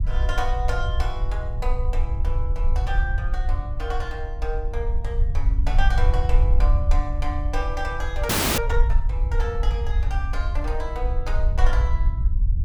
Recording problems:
low-frequency rumble; below 58 Hz, SNR -6 dB
frozen audio; at 8.5 s

